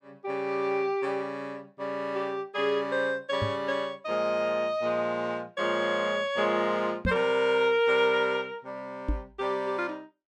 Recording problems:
knock on the microphone; at 3.5 s, at 7 s and at 9 s; peak +2 dB vs average level

